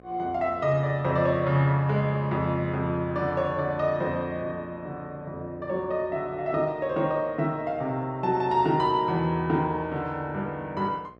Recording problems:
electrical hum; 60 Hz, harmonics up to 1.9 kHz, SNR 25 dB

